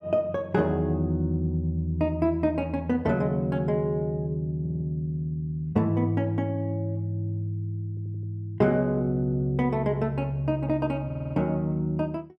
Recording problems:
audio stuttering; at 4.5 s, at 8 s and at 11 s

